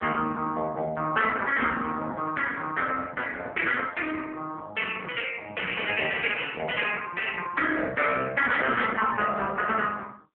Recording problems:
telephone audio; 130 Hz to 3.3 kHz, AMR-NB

